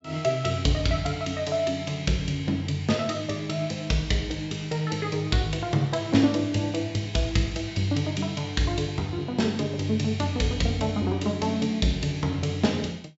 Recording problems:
treble missing; nothing above 8 kHz

